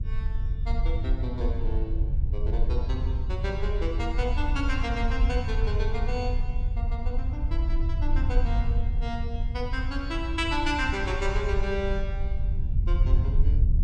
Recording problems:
rumble; below 72 Hz, SNR -4 dB

